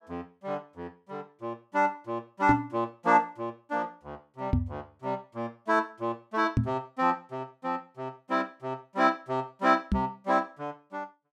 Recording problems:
microphone bump; 4 times, first at 2.5 s; peak +8 dB vs average level

